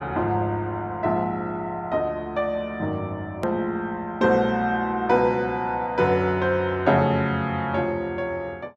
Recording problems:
hard cut with a click; at 3.5 s

